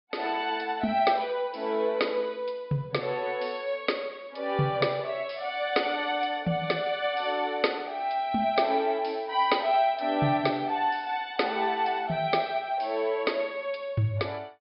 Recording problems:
low-pass filter; nothing above 5.2 kHz

